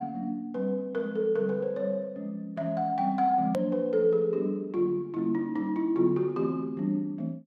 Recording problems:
edit click; at 3.5 s

